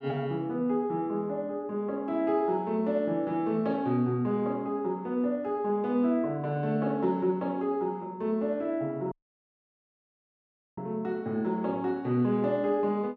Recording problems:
dropout; at 9 s for 1.5 s

